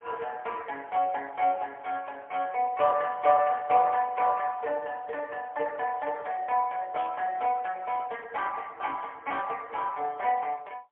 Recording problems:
telephone audio; 370 Hz to 3 kHz, AMR-NB, then MP3

